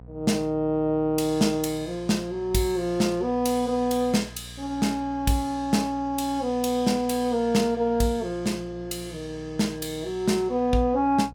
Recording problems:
hum; 60 Hz, harmonics up to 780 Hz, SNR 20 dB

